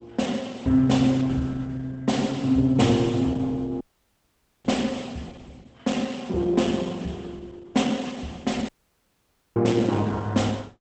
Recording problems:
lossy codec; Opus, log-spectral distance 4 dB, nothing above 8.2 kHz
audio cutting out; at 4 s for 1 s and at 8.5 s for 1 s

